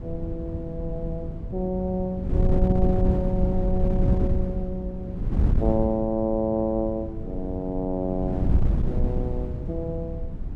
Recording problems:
wind on the microphone; below 120 Hz, SNR 0 dB

